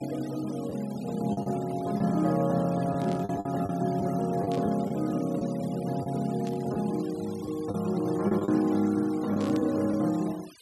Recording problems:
denoising artefacts; signal-to-artefact ratio 20 dB
lost packets; 5% of the sound replaced, filled with the last packet
burst of static; 4 times, first at 3 s; peak -12 dB vs average level

